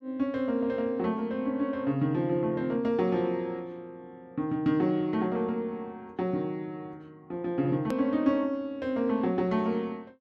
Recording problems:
edit click; at 8 s

